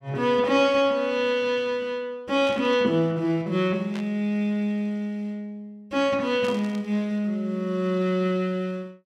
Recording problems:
static burst; at 2.5 s, at 4 s and at 6.5 s; peak -10 dB vs average level

